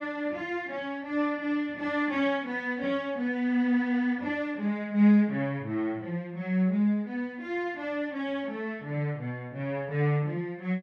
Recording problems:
none

